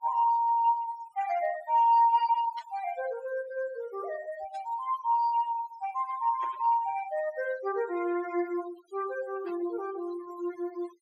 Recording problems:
denoising artefacts; signal-to-artefact ratio 18 dB
static burst; 4 times, first at 2.5 s; peak -13 dB vs average level

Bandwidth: 16 kHz